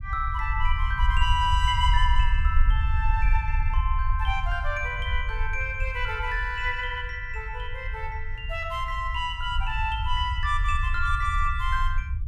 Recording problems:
low-frequency rumble; below 66 Hz, SNR 1 dB

